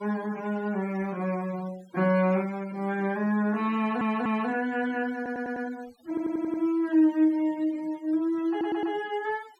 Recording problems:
noise reduction artefacts; signal-to-artefact ratio 22 dB
stutter; 4 times, first at 4 s

